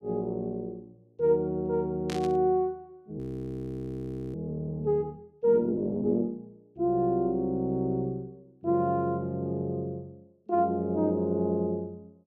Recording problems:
burst of static; at 2 s; peak -6 dB vs average level
frozen audio; at 3 s for 1 s

